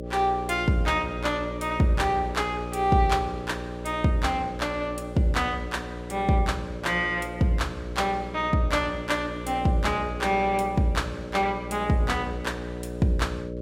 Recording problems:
hum; 60 Hz, harmonics up to 600 Hz, SNR 10 dB

